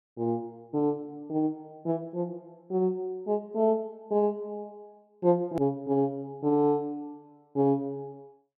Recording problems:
hard cut with a click; at 5.5 s

